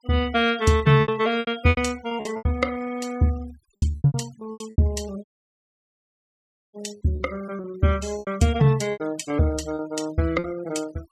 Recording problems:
denoising artefacts; signal-to-artefact ratio 21 dB
lost packets; 13% of the sound replaced, filled with repeated pitch periods
audio cutting out; at 5 s for 1.5 s

